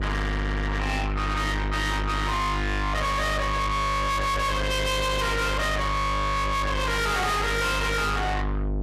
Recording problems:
distorted audio; soft clipping, signal-to-distortion ratio 6 dB
electrical hum; 50 Hz, harmonics up to 1.8 kHz, SNR 3 dB

